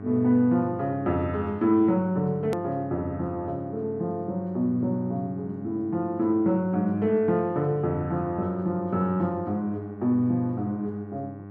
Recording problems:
electrical hum; 50 Hz, harmonics up to 1.5 kHz, SNR 15 dB
click at an edit; at 2.5 s

